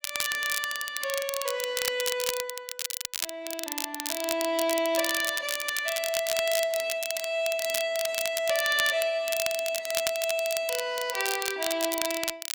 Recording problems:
crackling; vinyl, SNR 3 dB

